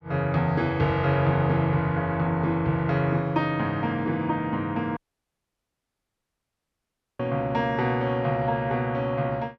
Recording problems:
dropout; at 5 s for 2 s

